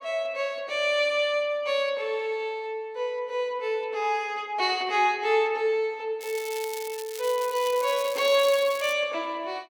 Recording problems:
crackling; from 6 to 9 s; loose cable, SNR 13 dB

